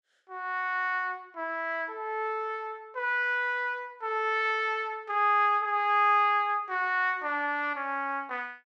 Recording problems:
none

